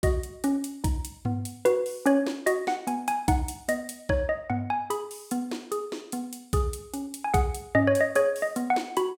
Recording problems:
none

